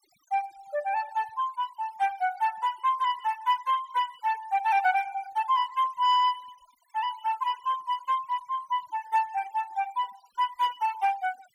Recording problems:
noise reduction artefacts; signal-to-artefact ratio 20 dB

